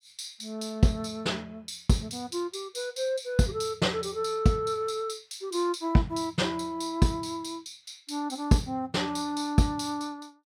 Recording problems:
none

